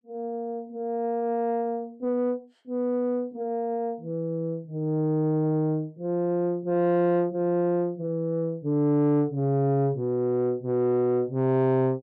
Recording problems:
distortion; soft clipping, signal-to-distortion ratio 10 dB

